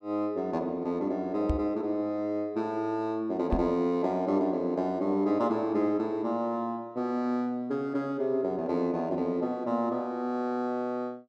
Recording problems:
microphone bump; at 1.5 s and at 3.5 s; peak +3 dB vs average level

